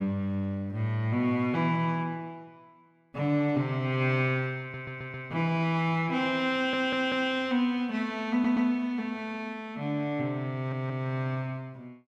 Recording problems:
stutter; 4 times, first at 4.5 s

